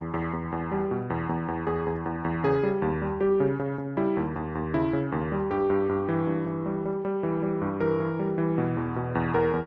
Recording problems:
codec artefacts; Opus, log-spectral distance 2 dB

